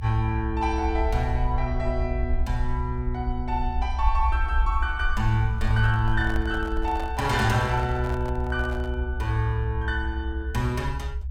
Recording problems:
low-frequency rumble; below 68 Hz, SNR 3 dB
microphone handling noise; from 5.5 to 9 s; peak -7 dB vs average level

